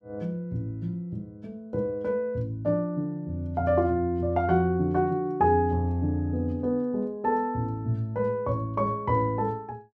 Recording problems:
none

